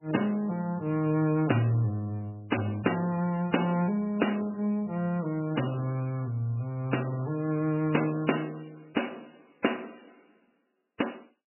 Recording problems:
lossy compression; MP3, log-spectral distance 5 dB, nothing above 2.9 kHz

